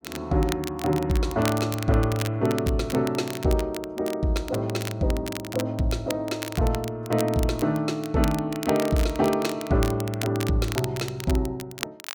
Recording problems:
crackling; vinyl, SNR 12 dB

